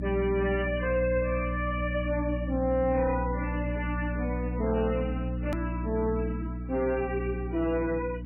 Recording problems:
lossy compression; MP3, log-spectral distance 3 dB, nothing above 2.9 kHz
distorted audio; soft clipping, signal-to-distortion ratio 9 dB
electrical hum; 60 Hz, harmonics up to 300 Hz, SNR 3 dB
hard cut with a click; at 5.5 s

